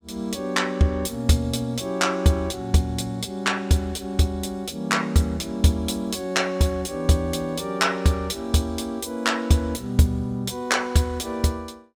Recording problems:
none

